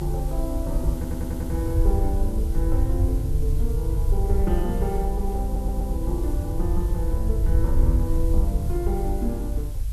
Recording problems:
hiss; slope -1 dB per octave, SNR 16 dB
rumble; below 74 Hz, SNR -4 dB
audio stuttering; at 1 s and at 5.5 s

